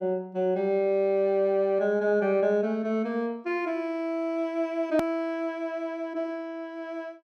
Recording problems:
edit click; at 5 s

